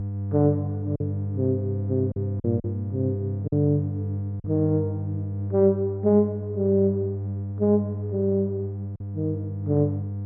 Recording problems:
hum; 50 Hz, harmonics up to 500 Hz, SNR 5 dB
lost packets; 2% of the sound replaced, filled with silence

